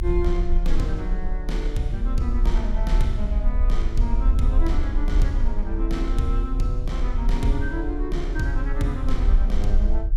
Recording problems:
rumble; below 42 Hz, strongest tone 34 Hz, SNR -4 dB

